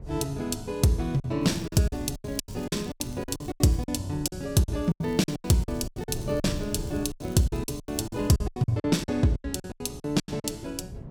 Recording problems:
wind on the microphone; below 180 Hz, SNR 14 dB
packet loss; 18% of the sound replaced, filled with silence
crackle; from 1.5 to 4 s and from 5 to 8.5 s; loose cable, SNR 26 dB

